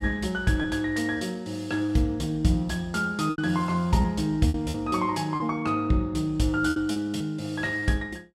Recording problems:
packet loss; 6% of the sound replaced, filled with repeated pitch periods

